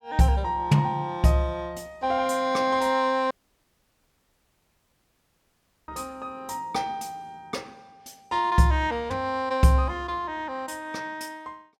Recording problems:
dropout; at 3.5 s for 2.5 s

